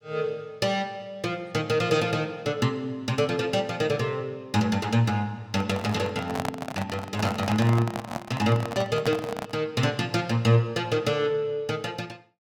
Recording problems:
handling noise; from 5.5 to 9.5 s; peak 0 dB vs average level

